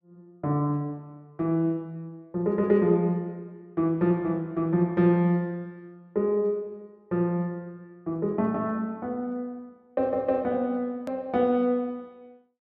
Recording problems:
click at an edit; at 11 s

